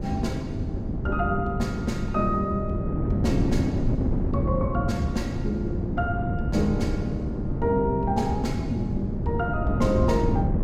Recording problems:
wind noise; below 240 Hz, SNR 0 dB

